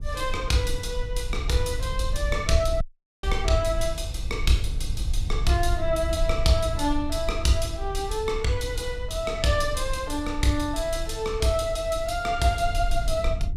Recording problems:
rumble; below 60 Hz, SNR 6 dB
dropout; at 3 s

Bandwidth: 15 kHz